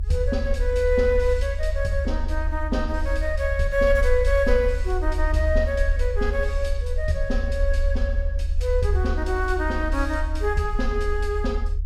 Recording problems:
low-frequency rumble; below 72 Hz, SNR 1 dB

